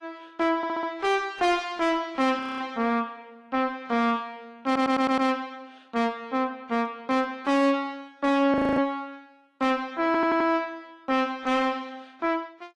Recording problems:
codec artefacts; AAC, log-spectral distance 2 dB, nothing above 11.3 kHz
distorted audio; soft clipping, signal-to-distortion ratio 7 dB
stutter; at 0.5 s, at 4.5 s and at 10 s
frozen audio; at 2.5 s and at 8.5 s

